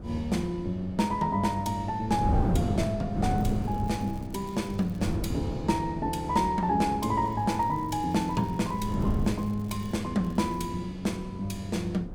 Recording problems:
wind noise; below 250 Hz, SNR 6 dB
crackling; from 3.5 to 5 s, from 7 to 10 s and at 10 s; loose cable, SNR 28 dB

